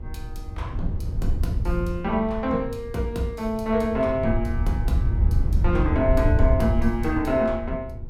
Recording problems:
hum; 60 Hz, harmonics up to 1.4 kHz, SNR 24 dB
wind on the microphone; below 90 Hz, SNR 1 dB

